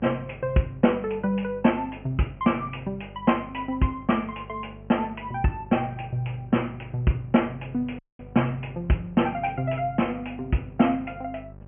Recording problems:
low-pass filter; nothing above 3.1 kHz
electrical hum; 50 Hz, harmonics up to 1 kHz, SNR 19 dB
dropout; at 8 s

